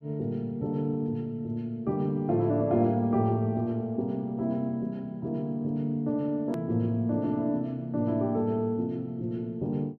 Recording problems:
edit click; at 6.5 s

